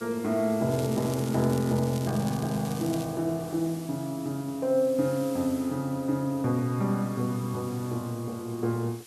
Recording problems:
hiss; slope +1 dB per octave, SNR 19 dB
crackle; from 0.5 to 2 s and from 2 to 3 s; loose cable, SNR 16 dB

